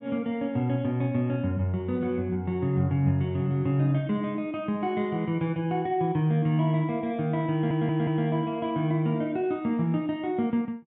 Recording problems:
audio stuttering; at 7.5 s

